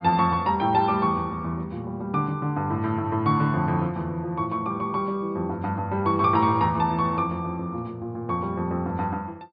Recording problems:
treble missing; nothing above 4.9 kHz

